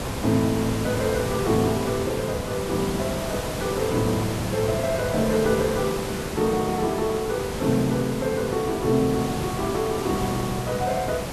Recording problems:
background hiss; slope -5 dB per octave, SNR 5 dB

